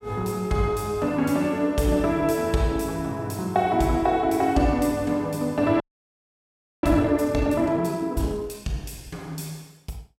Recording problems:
audio freezing; at 6 s for 1 s

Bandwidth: 16 kHz